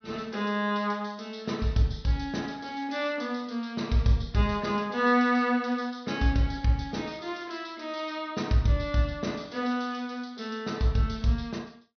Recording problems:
low-pass filter; nothing above 6 kHz

